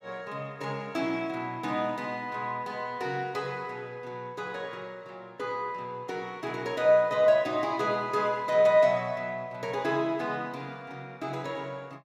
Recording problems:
none

